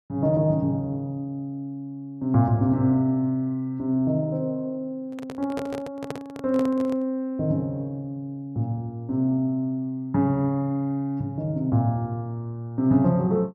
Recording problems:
microphone handling noise; from 5 to 7 s; peak -3 dB vs average level

